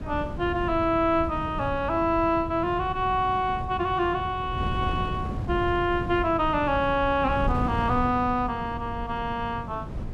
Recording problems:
wind noise; below 190 Hz, SNR 8 dB

